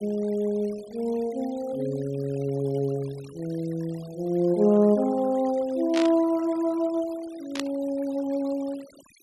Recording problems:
denoising artefacts; signal-to-artefact ratio 23 dB
static burst; at 6 s and at 7.5 s; peak -1 dB vs average level

